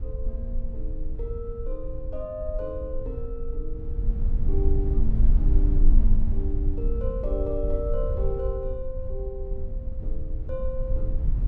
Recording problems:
low-frequency rumble; below 52 Hz, strongest tone 20 Hz, SNR -6 dB

